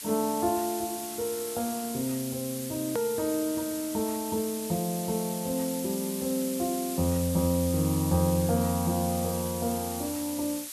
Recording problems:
hiss; slope +3 dB per octave, SNR 7 dB
hard cut with a click; at 3 s

